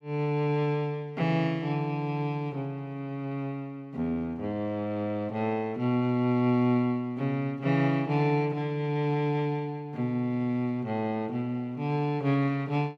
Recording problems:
none

